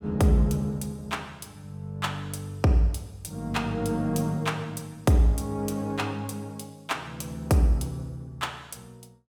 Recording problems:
none

